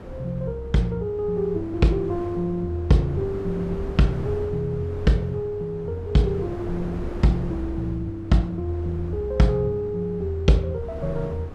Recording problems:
wind on the microphone; below 390 Hz, SNR 13 dB

